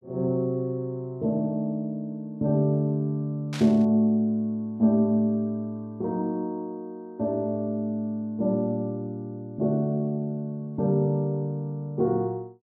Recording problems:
burst of static; at 3.5 s; peak -7 dB vs average level

